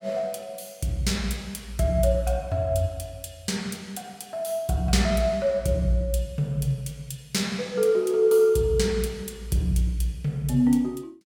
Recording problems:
none

